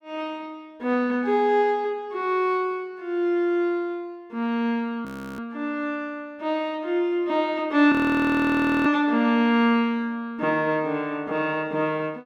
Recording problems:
frozen audio; at 5 s and at 8 s for 1 s

